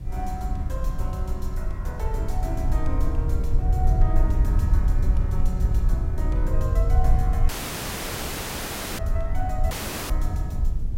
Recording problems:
background hiss; SNR 27 dB
low-frequency rumble; below 72 Hz, SNR -9 dB
dropout; at 7.5 s for 1.5 s and at 9.5 s

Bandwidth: 16 kHz